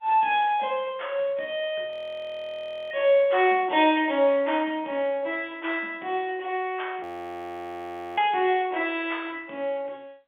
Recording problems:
phone line; 240 Hz to 3.5 kHz, G.711
audio freezing; at 2 s for 1 s and at 7 s for 1 s

